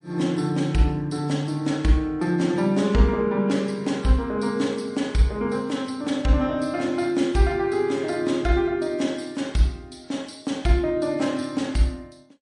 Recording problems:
codec artefacts; MP3, log-spectral distance 2 dB

